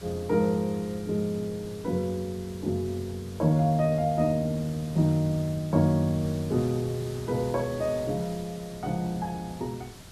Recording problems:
background hiss; slope -2 dB per octave, SNR 17 dB

